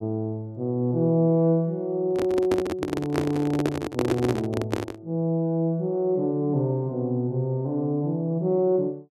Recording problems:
handling noise; from 2 to 5 s; peak +4 dB vs average level

